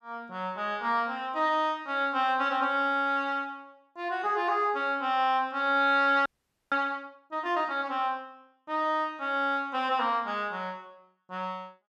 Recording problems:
audio freezing; at 6.5 s

